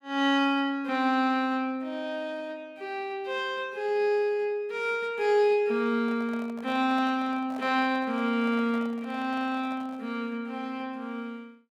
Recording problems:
microphone handling noise; from 6 to 10 s; peak -12 dB vs average level

